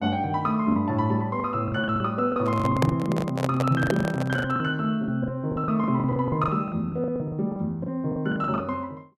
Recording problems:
packet loss; 15% of the sound replaced, filled with the last packet
handling noise; from 2.5 to 4.5 s; peak +4 dB vs average level

